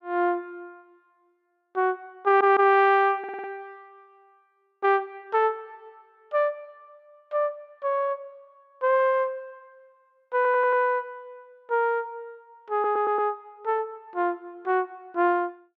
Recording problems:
audio stuttering; 4 times, first at 2.5 s

